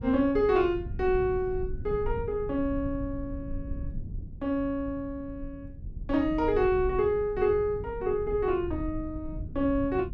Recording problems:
rumble; below 110 Hz, SNR 11 dB

